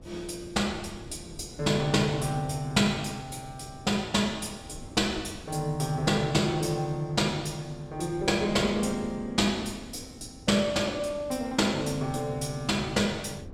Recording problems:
wind on the microphone; below 280 Hz, SNR 18 dB

